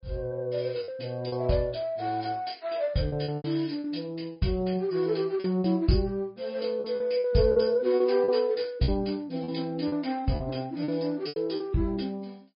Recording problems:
low-pass filter; nothing above 4.9 kHz
lossy compression; MP3, log-spectral distance 4 dB
packet loss; 8% of the sound replaced, filled with repeated pitch periods

